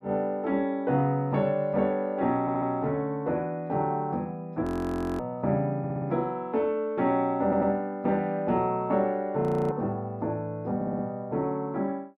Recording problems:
stutter; 4 times, first at 2.5 s
frozen audio; at 4.5 s for 0.5 s and at 9.5 s

